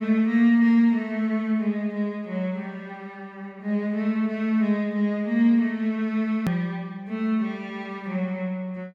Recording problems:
click at an edit; at 6.5 s

